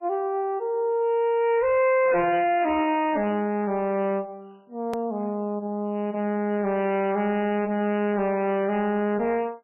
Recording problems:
codec artefacts; MP3, log-spectral distance 2 dB, nothing above 2.5 kHz
distorted audio; hard clipping, signal-to-distortion ratio 6 dB
hard cut with a click; at 5 s

